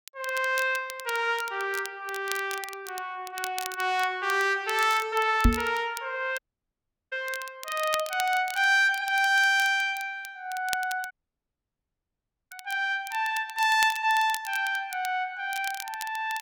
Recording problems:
crackling; vinyl, SNR 14 dB
microphone thump; at 5.5 s; peak +8 dB vs average level
audio cutting out; at 6.5 s for 0.5 s and at 11 s for 1.5 s

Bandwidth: 17 kHz